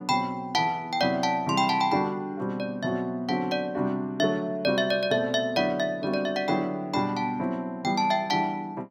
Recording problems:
none

